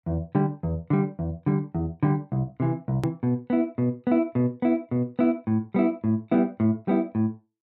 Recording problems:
edit click; at 3 s

